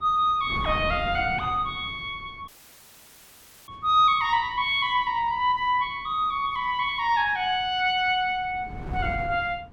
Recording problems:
wind noise; below 240 Hz, SNR 15 dB
audio cutting out; at 2.5 s for 1 s

